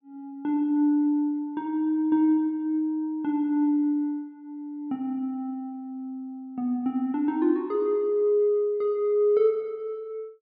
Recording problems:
none

